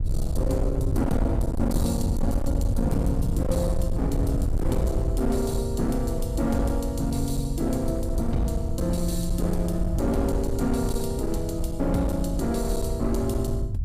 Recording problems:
distortion; hard clipping, signal-to-distortion ratio 8 dB
rumble; below 100 Hz, SNR 2 dB

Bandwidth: 15 kHz